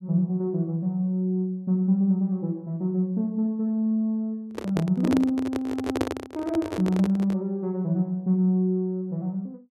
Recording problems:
handling noise; from 4.5 to 7.5 s; peak +4 dB vs average level

